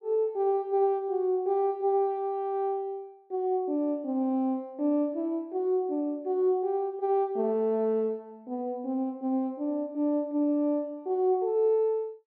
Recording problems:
none

